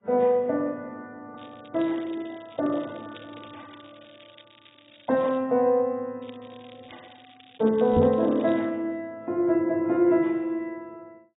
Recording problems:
lossy codec; AAC, log-spectral distance 10 dB, nothing above 3.6 kHz
crackling; from 1.5 to 5.5 s and from 6 to 8.5 s; loose cable, SNR 27 dB
microphone bump; at 8 s; peak +3 dB vs average level

